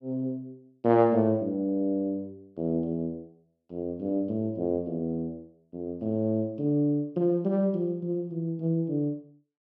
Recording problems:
none

